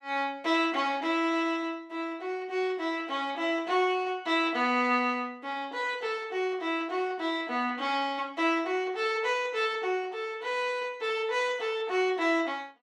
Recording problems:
none

